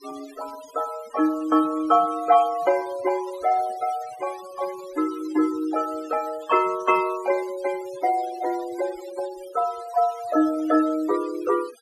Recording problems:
noise reduction artefacts; signal-to-artefact ratio 19 dB

